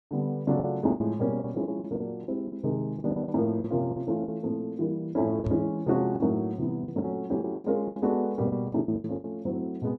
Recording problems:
packet loss; 13% of the sound replaced, filled with the last packet
microphone thump; at 5.5 s; peak +1 dB vs average level

